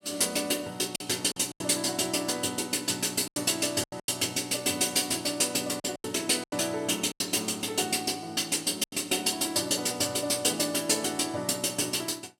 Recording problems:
packet loss; 6% of the sound replaced, filled with silence

